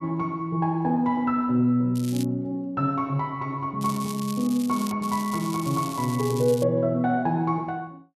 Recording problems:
crackle; at 2 s, from 4 to 5 s and from 5 to 6.5 s; loose cable, SNR 15 dB

